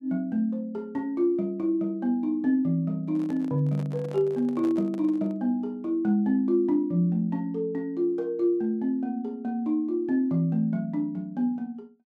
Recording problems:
handling noise; from 3 to 5.5 s; peak -10 dB vs average level

